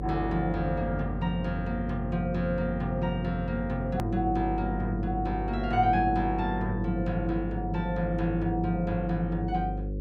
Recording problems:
electrical hum; 50 Hz, harmonics up to 550 Hz, SNR 5 dB
hard cut with a click; at 4 s

